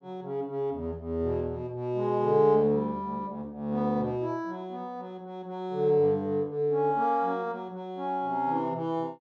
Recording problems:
none

